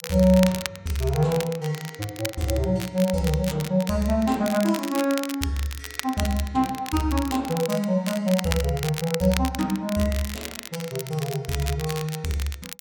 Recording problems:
crackling; vinyl, SNR 10 dB

